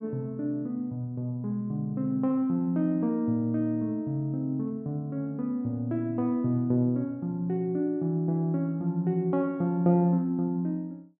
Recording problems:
none

